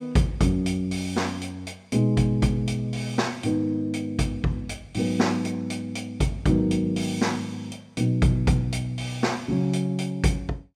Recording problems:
none

